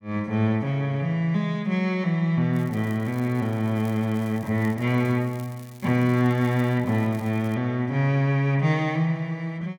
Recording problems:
crackling; from 2.5 to 7.5 s; loose cable, SNR 26 dB

